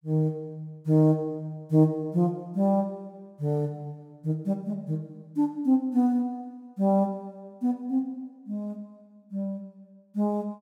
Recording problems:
none

